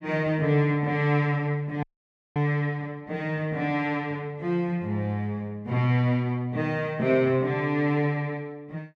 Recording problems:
dropout; at 2 s for 0.5 s

